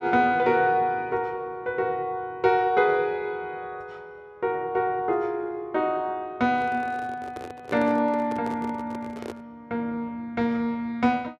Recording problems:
microphone handling noise; from 6.5 to 9.5 s; peak -6 dB vs average level

